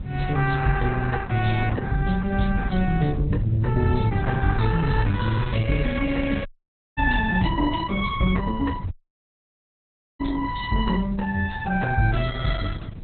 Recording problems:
lossy codec; Opus, log-spectral distance 4 dB, nothing above 4 kHz
background hiss; SNR 28 dB
wind noise; below 150 Hz, SNR 8 dB
audio cutting out; at 6.5 s for 0.5 s and at 9 s for 1.5 s

